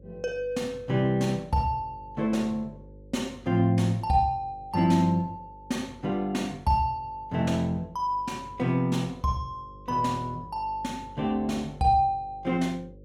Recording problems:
hum; 50 Hz, harmonics up to 550 Hz, SNR 22 dB

